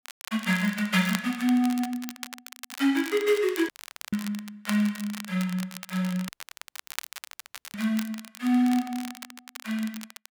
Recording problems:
crackling; vinyl, SNR 13 dB
dropout; at 3.5 s and at 6.5 s for 1.5 s

